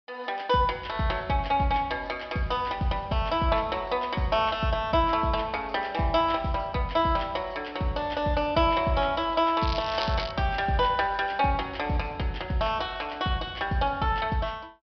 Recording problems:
low-pass filter; nothing above 5.5 kHz
crackling; at 9.5 s; loose cable, SNR 10 dB

